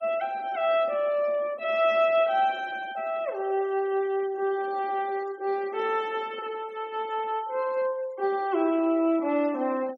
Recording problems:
denoising artefacts; signal-to-artefact ratio 24 dB

